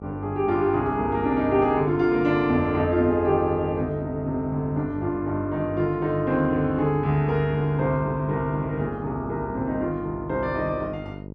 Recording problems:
hum; 50 Hz, harmonics up to 950 Hz, SNR 13 dB

